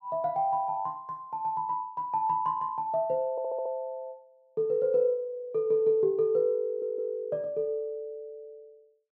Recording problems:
stutter; at 3.5 s and at 6.5 s

